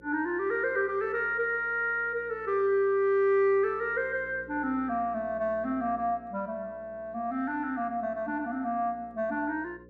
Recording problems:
electrical hum; 60 Hz, harmonics up to 540 Hz, SNR 24 dB

